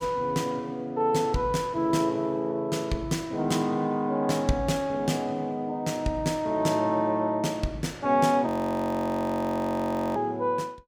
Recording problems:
frozen audio; at 8.5 s for 1.5 s

